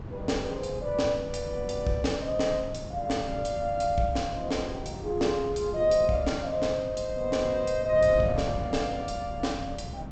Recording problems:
treble missing; nothing above 8 kHz
wind on the microphone; below 240 Hz, SNR 11 dB

